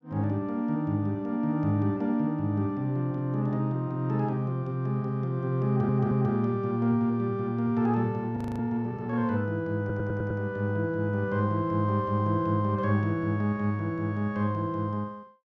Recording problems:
audio stuttering; at 5.5 s and at 10 s
audio freezing; at 8.5 s

